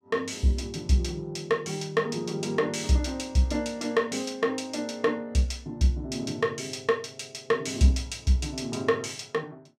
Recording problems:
none

